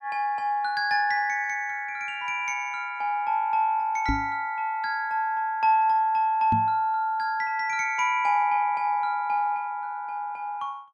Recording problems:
microphone thump; at 4 s and at 6.5 s; peak +2 dB vs average level

